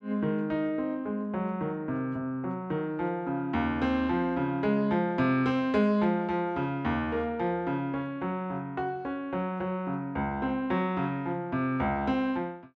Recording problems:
none

